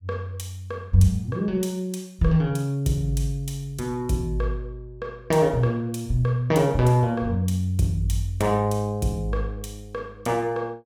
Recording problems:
none

